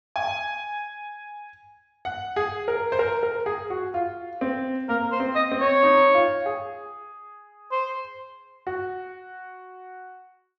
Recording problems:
treble missing; nothing above 8 kHz

